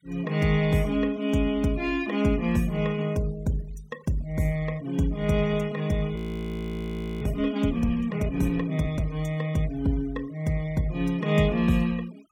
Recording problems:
noise reduction artefacts; signal-to-artefact ratio 23 dB
frozen audio; at 6 s for 1 s

